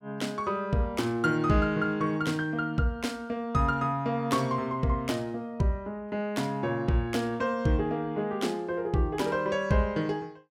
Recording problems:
none

